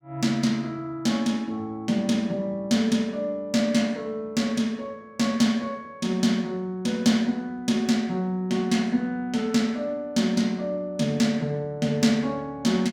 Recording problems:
none

